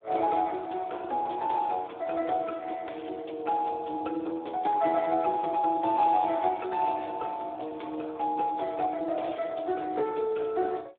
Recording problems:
telephone audio; 280 Hz to 3.6 kHz, Speex

